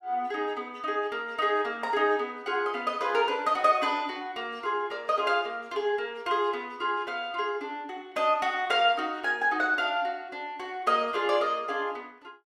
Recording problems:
none

